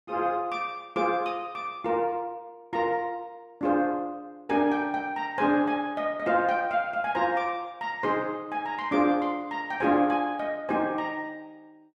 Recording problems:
none

